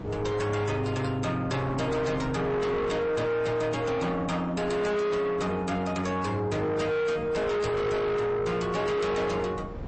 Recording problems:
codec artefacts; MP3, log-spectral distance 2 dB, nothing above 8.2 kHz
distorted audio; soft clipping, signal-to-distortion ratio 7 dB
wind noise; below 560 Hz, SNR 15 dB

